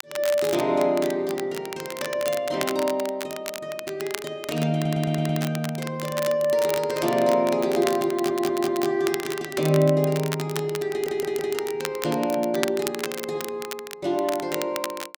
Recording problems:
crackling; vinyl, SNR 10 dB
stutter; at 5 s, at 8 s and at 11 s

